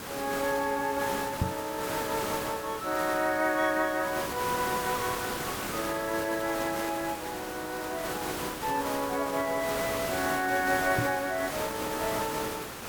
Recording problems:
background hiss; slope -4 dB per octave, SNR 4 dB
knock on the microphone; at 1.5 s and at 11 s; peak +6 dB vs average level

